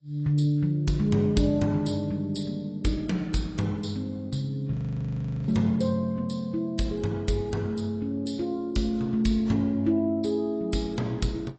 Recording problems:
lossy codec; AAC, log-spectral distance 2 dB, nothing above 8.2 kHz
frozen audio; at 4.5 s for 1 s

